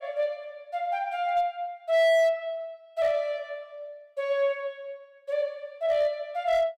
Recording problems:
distorted audio; hard clipping, uneven, signal-to-distortion ratio 8 dB

